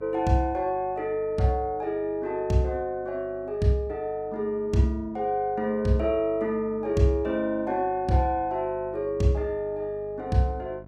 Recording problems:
electrical hum; 50 Hz, harmonics up to 1.1 kHz, SNR 22 dB

